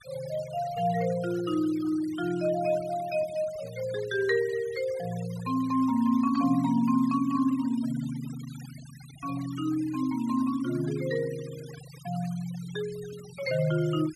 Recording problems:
denoising artefacts; signal-to-artefact ratio 19 dB

